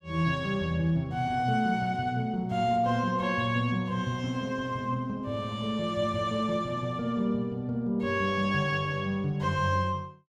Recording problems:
none

